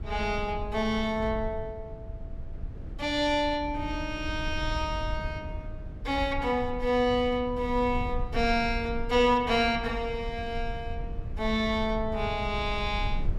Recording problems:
rumble; below 84 Hz, SNR 10 dB

